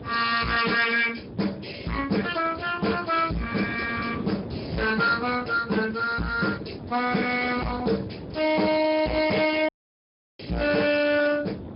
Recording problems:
low-pass filter; nothing above 5.2 kHz
lossy compression; Speex, log-spectral distance 7 dB
distorted audio; hard clipping, signal-to-distortion ratio 8 dB
wind on the microphone; below 430 Hz, SNR 13 dB
dropout; at 9.5 s for 0.5 s

